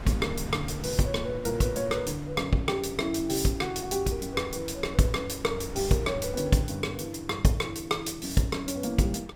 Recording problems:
wind on the microphone; below 300 Hz, SNR 14 dB

